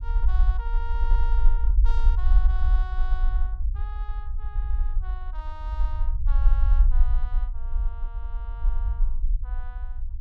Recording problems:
rumble; below 48 Hz, strongest tone 20 Hz, SNR -16 dB

